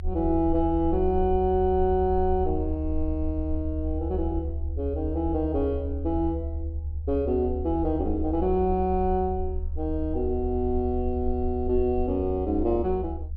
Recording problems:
treble missing; nothing above 4.9 kHz
rumble; below 76 Hz, SNR 6 dB

